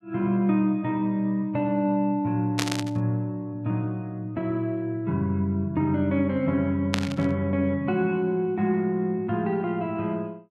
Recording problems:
static burst; at 2.5 s and at 7 s; peak +4 dB vs average level

